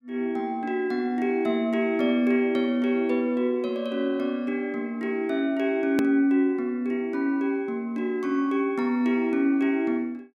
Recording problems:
hard cut with a click; at 6 s

